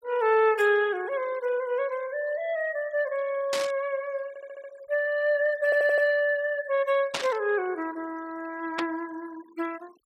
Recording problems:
denoising artefacts; signal-to-artefact ratio 24 dB
burst of static; at 3.5 s, at 7 s and at 9 s; peak +2 dB vs average level
stutter; at 4.5 s and at 5.5 s

